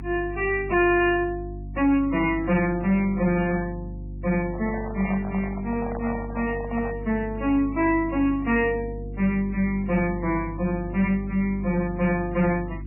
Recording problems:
lossy compression; MP3, log-spectral distance 2 dB, nothing above 2.4 kHz
distorted audio; soft clipping, signal-to-distortion ratio 10 dB
electrical hum; 50 Hz, harmonics up to 350 Hz, SNR 12 dB
handling noise; from 4.5 to 7 s; peak -6 dB vs average level

